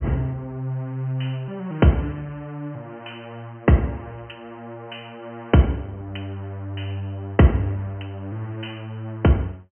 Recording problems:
treble cut off; nothing above 3.1 kHz

